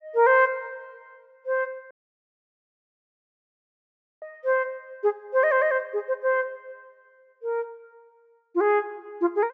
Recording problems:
treble cut off; nothing above 8 kHz
dropout; at 2 s for 2.5 s

